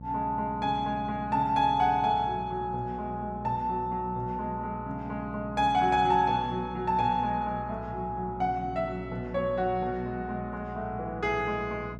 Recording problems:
electrical hum; 60 Hz, harmonics up to 600 Hz, SNR 13 dB

